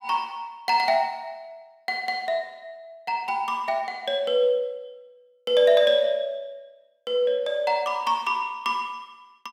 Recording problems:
none

